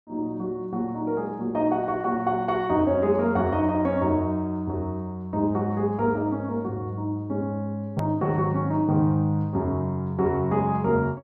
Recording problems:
edit click; at 8 s

